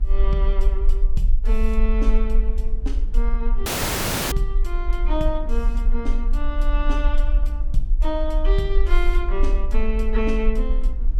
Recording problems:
low-frequency rumble; below 42 Hz, SNR -5 dB
wind noise; below 250 Hz, SNR 16 dB
dropout; at 3.5 s for 0.5 s

